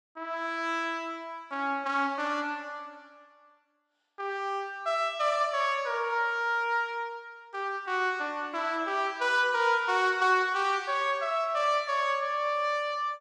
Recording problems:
none

